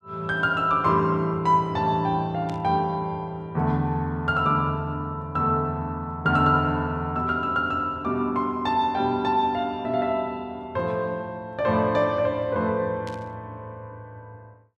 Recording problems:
static burst; at 2.5 s and at 13 s; peak -13 dB vs average level

